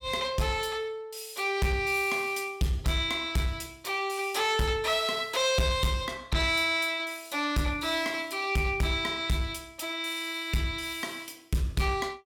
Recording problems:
distorted audio; soft clipping, signal-to-distortion ratio 12 dB

